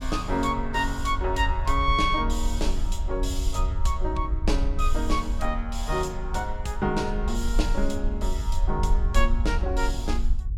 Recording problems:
low-frequency rumble; below 54 Hz, SNR 1 dB

